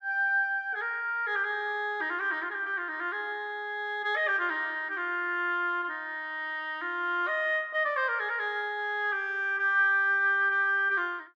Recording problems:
none

